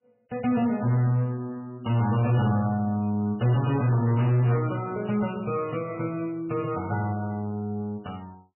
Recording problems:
lossy compression; MP3, log-spectral distance 3 dB, nothing above 2.8 kHz
distorted audio; hard clipping, signal-to-distortion ratio 11 dB

